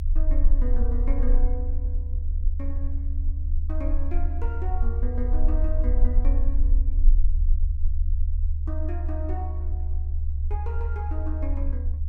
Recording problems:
rumble; below 56 Hz, strongest tone 18 Hz, SNR -11 dB

